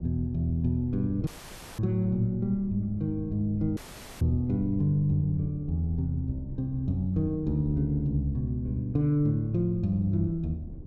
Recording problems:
low-frequency rumble; below 140 Hz, SNR 16 dB
audio cutting out; at 1.5 s for 0.5 s and at 4 s

